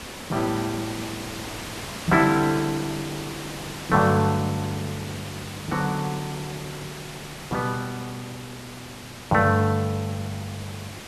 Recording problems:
background hiss; slope -3 dB per octave, SNR 11 dB

